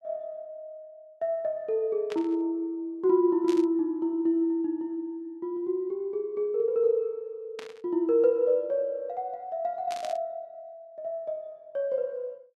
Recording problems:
burst of static; 4 times, first at 2 s; peak -8 dB vs average level

